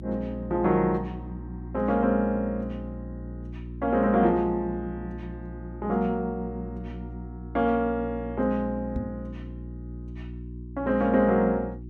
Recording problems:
hum; 60 Hz, harmonics up to 360 Hz, SNR 12 dB
microphone bump; at 9 s; peak -2 dB vs average level

